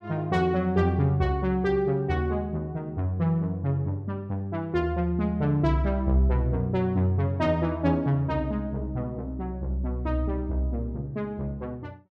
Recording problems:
none

